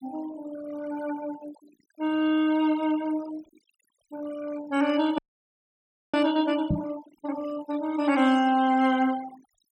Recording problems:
denoising artefacts; signal-to-artefact ratio 17 dB
frozen audio; at 5 s for 1 s
microphone bump; at 6.5 s; peak +3 dB vs average level

